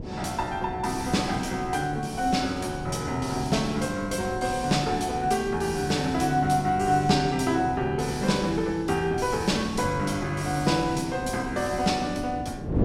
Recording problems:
wind noise; below 330 Hz, SNR 12 dB

